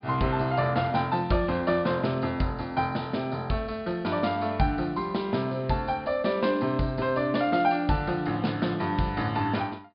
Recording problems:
low-pass filter; nothing above 5 kHz

